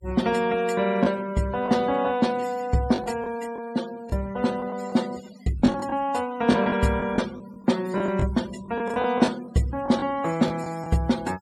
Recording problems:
denoising artefacts; signal-to-artefact ratio 18 dB
packet loss; 7% of the sound replaced, filled with the last packet

